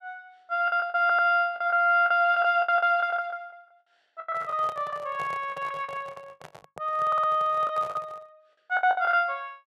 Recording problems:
packet loss; 14% of the sound replaced, filled with the last packet
audio stuttering; at 1 s and at 7 s
handling noise; from 4.5 to 8.5 s; peak -11 dB vs average level

